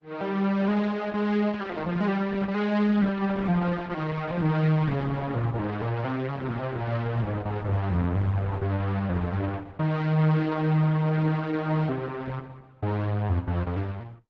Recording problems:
lossy compression; Opus, log-spectral distance 3 dB

